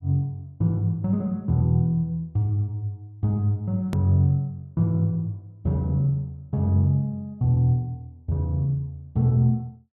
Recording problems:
hard cut with a click; at 4 s

